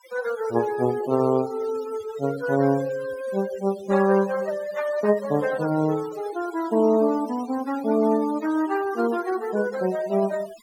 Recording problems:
denoising artefacts; signal-to-artefact ratio 18 dB

